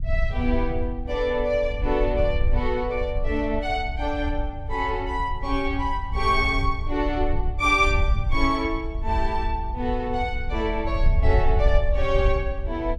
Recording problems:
wind noise; below 64 Hz, SNR 3 dB

